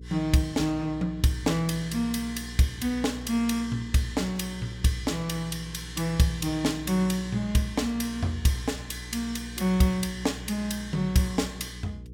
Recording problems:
hum; 60 Hz, harmonics up to 480 Hz, SNR 14 dB

